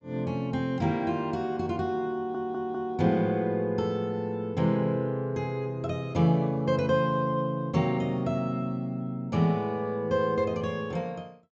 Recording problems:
treble missing; nothing above 8 kHz
stutter; at 2 s

